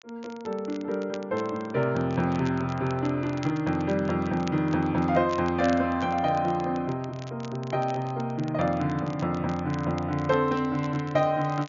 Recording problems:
low-pass filter; nothing above 7 kHz
crackling; vinyl, SNR 22 dB

